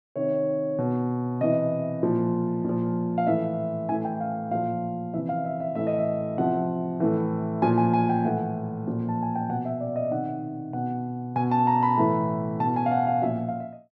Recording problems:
none

